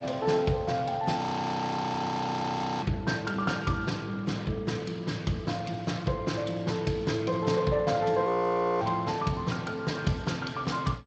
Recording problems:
codec artefacts; Speex, then MP2, log-spectral distance 4 dB, nothing above 6.9 kHz
frozen audio; at 1 s for 1.5 s and at 8.5 s for 0.5 s

